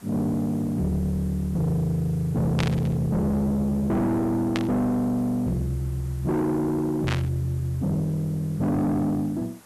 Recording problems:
distortion; soft clipping, signal-to-distortion ratio 7 dB
hiss; slope -4 dB per octave, SNR 25 dB
burst of static; at 2.5 s, at 4.5 s and at 7 s; peak 0 dB vs average level

